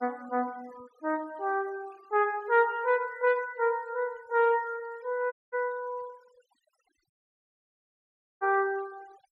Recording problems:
noise reduction artefacts; signal-to-artefact ratio 25 dB
audio cutting out; at 5.5 s and at 7 s for 1.5 s

